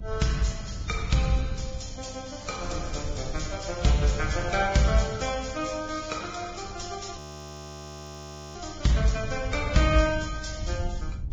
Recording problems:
lossy codec; Vorbis, then Vorbis, log-spectral distance 6 dB, nothing above 7.3 kHz
electrical hum; 50 Hz, harmonics up to 700 Hz, SNR 21 dB
wind noise; below 94 Hz, SNR 10 dB
crackling; at 1 s and from 2.5 to 4.5 s; loose cable, SNR 24 dB
audio freezing; at 7 s for 1.5 s

